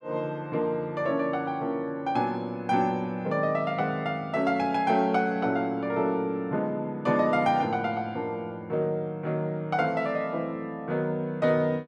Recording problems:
none

